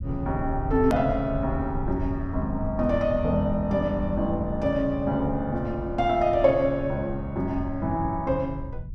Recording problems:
rumble; below 110 Hz, SNR 10 dB
hard cut with a click; at 1 s

